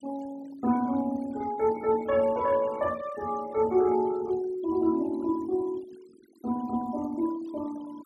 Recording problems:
noise reduction artefacts; signal-to-artefact ratio 20 dB

